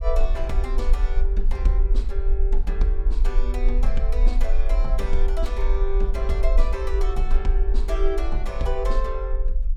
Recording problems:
low-frequency rumble; below 42 Hz, strongest tone 20 Hz, SNR -6 dB

